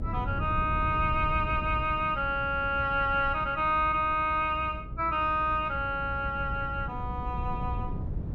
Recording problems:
hum; 60 Hz, harmonics up to 660 Hz, SNR 15 dB
wind noise; below 130 Hz, SNR 9 dB

